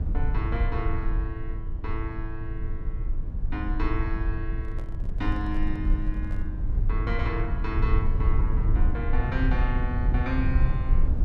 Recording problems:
rumble; below 70 Hz, SNR -5 dB
handling noise; from 4.5 to 6.5 s; peak -9 dB vs average level

